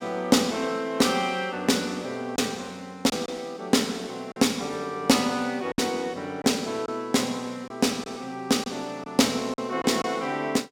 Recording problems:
packet loss; 3% of the sound replaced, filled with silence

